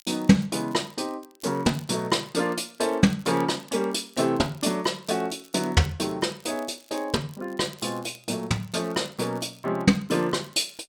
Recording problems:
crackle; vinyl, SNR 25 dB

